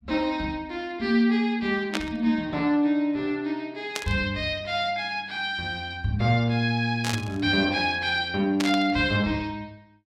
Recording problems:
static burst; 4 times, first at 2 s; peak +1 dB vs average level

